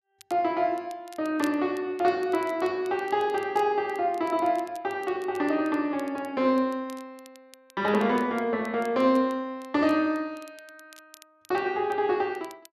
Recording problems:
crackling; vinyl, SNR 26 dB

